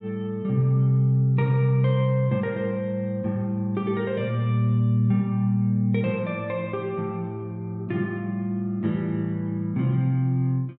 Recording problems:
none

